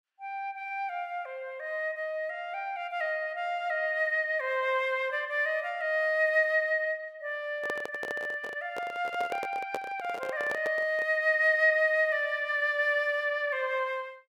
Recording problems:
microphone handling noise; from 7.5 to 11 s; peak -3 dB vs average level

